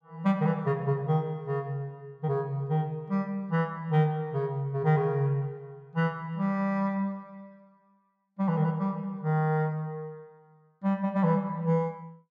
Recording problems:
none

